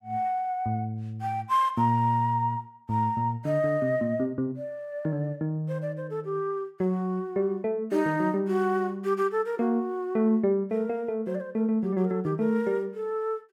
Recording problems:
none

